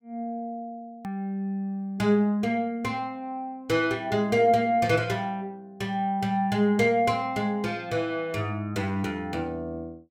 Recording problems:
click at an edit; at 1 s

